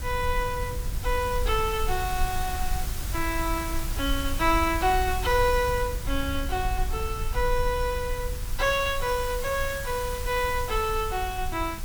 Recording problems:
background hiss; slope 0 dB per octave, SNR 10 dB
rumble; below 64 Hz, SNR 6 dB

